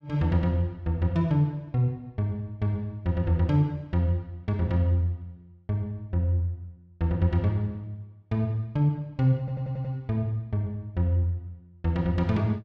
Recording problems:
stutter; at 9.5 s

